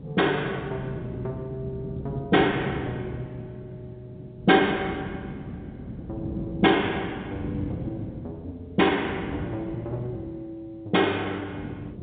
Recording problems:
telephone audio; 190 Hz to 3.6 kHz, G.711
wind on the microphone; below 280 Hz, SNR 10 dB

